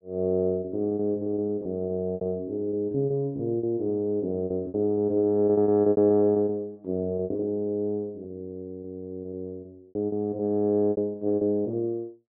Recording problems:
lost packets; 16% of the sound replaced, filled with repeated pitch periods

